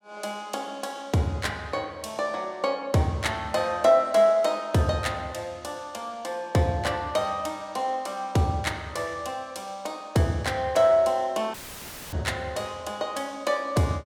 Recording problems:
audio cutting out; at 12 s for 0.5 s; filled with static

